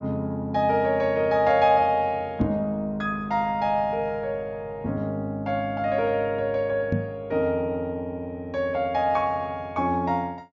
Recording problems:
treble missing; nothing above 7.1 kHz
knock on the microphone; at 2.5 s and at 7 s; peak +3 dB vs average level

